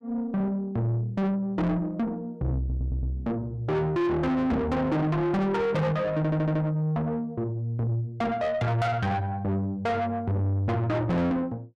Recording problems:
distortion; soft clipping, signal-to-distortion ratio 6 dB
stutter; at 2.5 s and at 6 s

